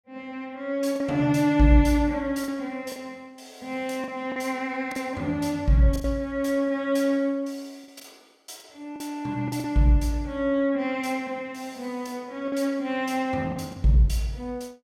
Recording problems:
packet loss; 5% of the sound replaced, filled with the last packet

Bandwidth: 16 kHz